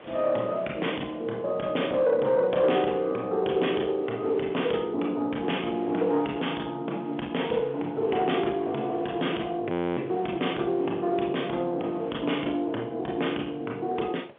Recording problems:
phone line; 220 Hz to 3.5 kHz, G.711
distortion; soft clipping, signal-to-distortion ratio 12 dB
wind on the microphone; below 1.8 kHz, SNR 22 dB
audio freezing; at 9.5 s

